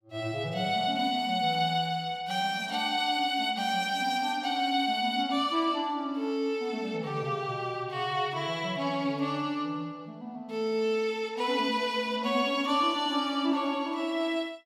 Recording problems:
none

